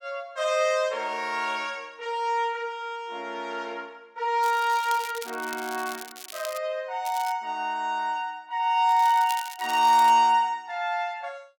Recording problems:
crackling; from 4.5 to 6.5 s, at 7 s and from 9 to 10 s; loose cable, SNR 15 dB

